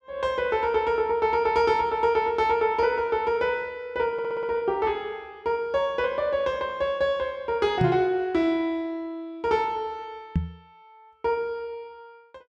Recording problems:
audio stuttering; at 4 s
microphone bump; at 8 s and at 10 s; peak +4 dB vs average level

